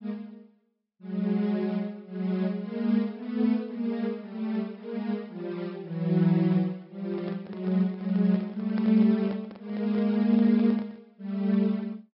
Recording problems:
low-pass filter; nothing above 5.4 kHz
handling noise; from 7 to 11 s; peak -10 dB vs average level

